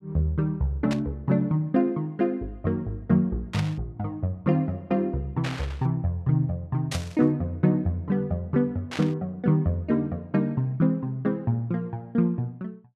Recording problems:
burst of static; 5 times, first at 1 s; peak -3 dB vs average level

